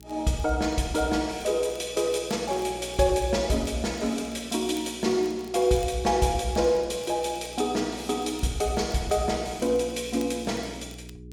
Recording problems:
hum; 60 Hz, harmonics up to 420 Hz, SNR 21 dB
crackle; vinyl, SNR 27 dB

